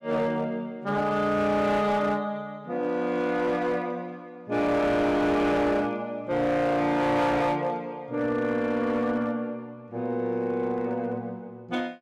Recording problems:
distortion; hard clipping, signal-to-distortion ratio 10 dB

